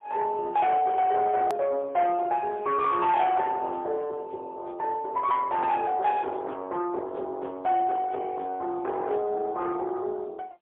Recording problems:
telephone audio; 300 Hz to 2.5 kHz, AMR-NB, then MP3
distorted audio; soft clipping, signal-to-distortion ratio 13 dB
click at an edit; at 1.5 s

